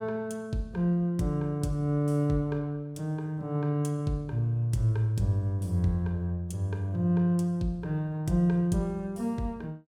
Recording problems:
none

